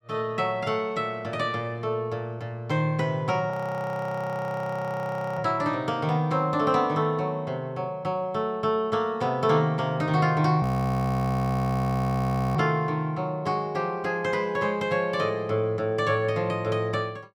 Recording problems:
frozen audio; at 3.5 s for 2 s and at 11 s for 2 s

